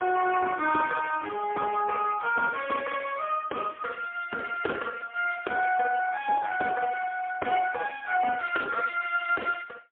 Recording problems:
telephone audio; 280 Hz to 3.3 kHz, AMR-NB, then MP3

